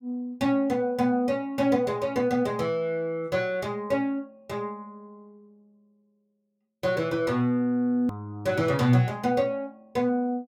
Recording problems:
click at an edit; at 8 s

